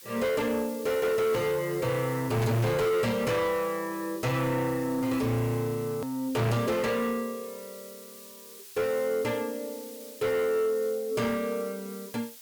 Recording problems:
distorted audio; soft clipping, signal-to-distortion ratio 8 dB
background hiss; slope +3 dB per octave, SNR 16 dB
click at an edit; at 6 s

